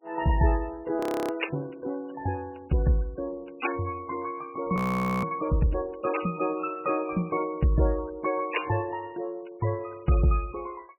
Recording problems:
lossy compression; MP3, log-spectral distance 6 dB
frozen audio; at 1 s and at 5 s

